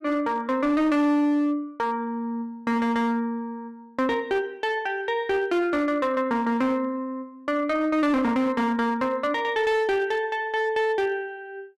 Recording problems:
distortion; hard clipping, uneven, signal-to-distortion ratio 11 dB

